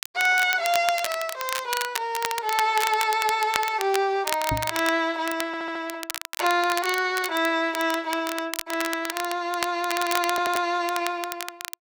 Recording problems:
crackling; vinyl, SNR 8 dB
microphone thump; at 4.5 s; peak 0 dB vs average level
audio stuttering; at 5.5 s and at 10 s

